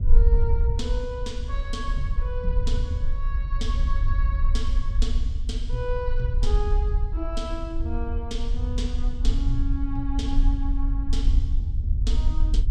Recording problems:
low-frequency rumble; below 56 Hz, SNR -7 dB

